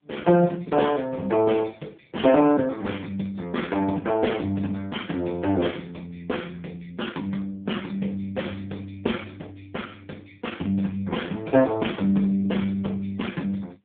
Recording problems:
telephone audio; 220 Hz to 3.4 kHz, AMR-NB

